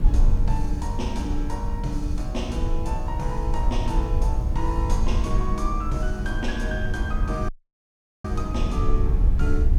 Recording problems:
background hiss; slope -1 dB per octave, SNR 29 dB
low-frequency rumble; below 62 Hz, SNR -3 dB
audio cutting out; at 7.5 s for 1 s

